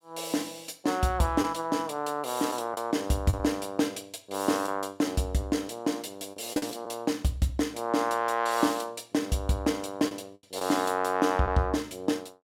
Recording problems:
lost packets; 3% of the sound replaced, filled with the last packet

